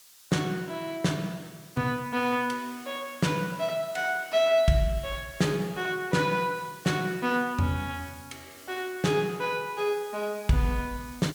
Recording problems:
background hiss; slope +3 dB per octave, SNR 20 dB

